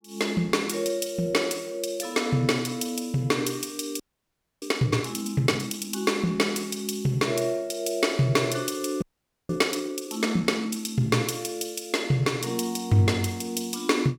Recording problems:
audio freezing; at 4 s for 0.5 s and at 9 s

